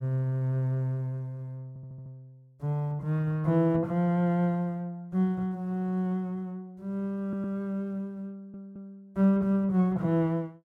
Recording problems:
audio stuttering; at 1.5 s, at 7 s and at 8.5 s

